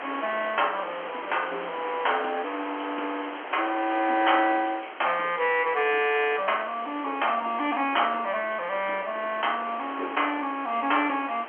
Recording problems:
phone line; 260 Hz to 3.3 kHz, G.711
hiss; SNR 18 dB
wind on the microphone; below 1.9 kHz, SNR 12 dB

